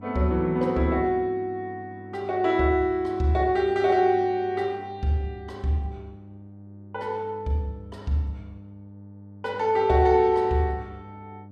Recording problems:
electrical hum; 50 Hz, harmonics up to 600 Hz, SNR 20 dB

